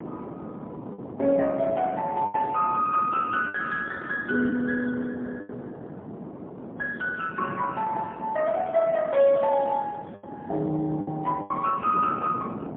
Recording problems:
telephone audio; 130 Hz to 3 kHz, AMR-NB, then MP3
wind noise; below 520 Hz, SNR 13 dB
packet loss; 4% of the sound replaced, filled with the last packet

